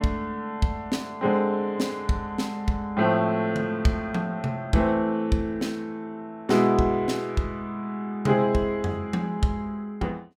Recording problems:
none

